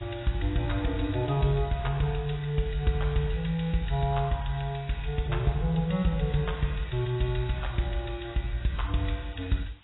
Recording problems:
lossy codec; AAC, log-spectral distance 7 dB, nothing above 3.9 kHz
background hiss; SNR 27 dB

